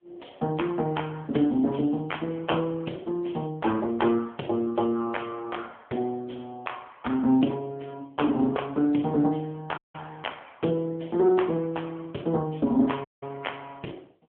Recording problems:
telephone audio; 170 Hz to 3.4 kHz, AMR-NB
dropout; at 10 s and at 13 s

